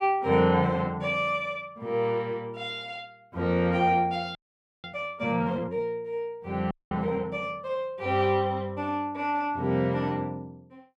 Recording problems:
frozen audio; at 4.5 s and at 6.5 s

